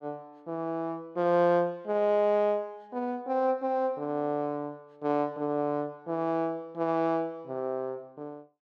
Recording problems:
none

